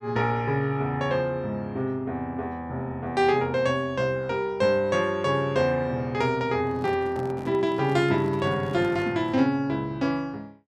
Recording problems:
handling noise; from 6.5 to 9.5 s; peak -8 dB vs average level

